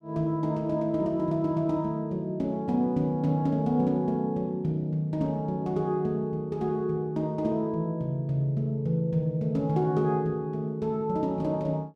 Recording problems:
none

